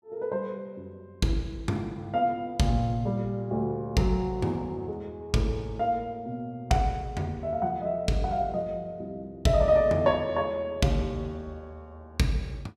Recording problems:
none

